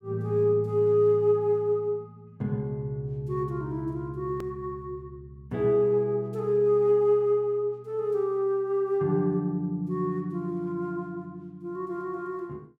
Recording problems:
hard cut with a click; at 4.5 s

